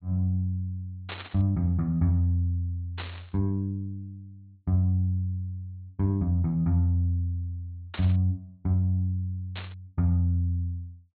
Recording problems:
treble cut off; nothing above 4.3 kHz
burst of static; 4 times, first at 1 s; peak -5 dB vs average level

